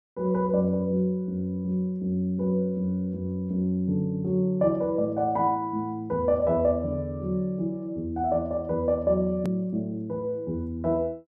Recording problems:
edit click; at 9.5 s

